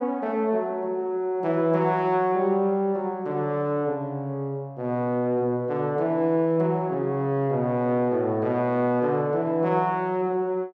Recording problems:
none

